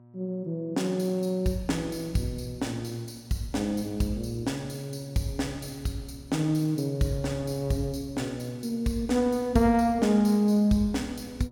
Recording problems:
electrical hum; 60 Hz, harmonics up to 960 Hz, SNR 25 dB

